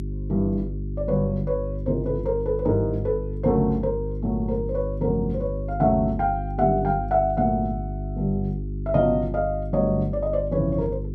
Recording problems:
hum; 50 Hz, harmonics up to 400 Hz, SNR 7 dB

